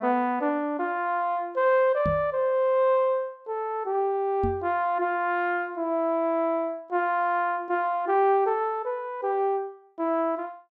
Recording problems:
knock on the microphone; at 2 s and at 4.5 s; peak -1 dB vs average level

